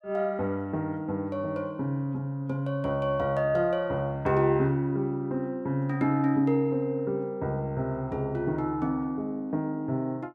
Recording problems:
none

